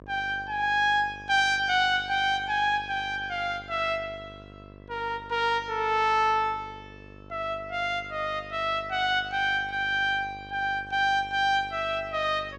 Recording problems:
electrical hum; 50 Hz, harmonics up to 1.3 kHz, SNR 21 dB

